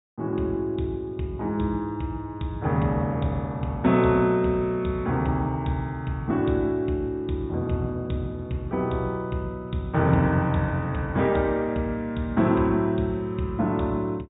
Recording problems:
treble missing; nothing above 4 kHz

